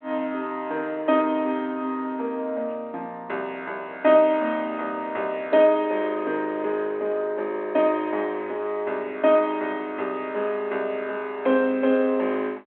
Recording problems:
telephone audio; 220 Hz to 3.5 kHz, G.726

